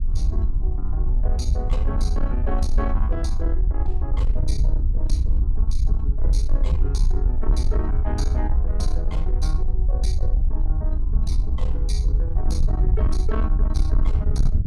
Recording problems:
distorted audio; soft clipping, signal-to-distortion ratio 12 dB
rumble; below 56 Hz, SNR -8 dB
wind noise; below 74 Hz, SNR -2 dB

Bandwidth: 14.5 kHz